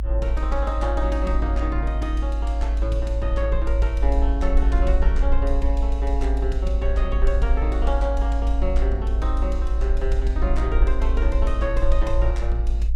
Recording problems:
low-frequency rumble; below 54 Hz, strongest tone 52 Hz, SNR -5 dB

